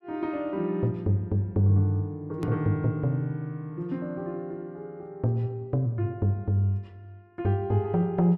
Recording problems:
hard cut with a click; at 2.5 s

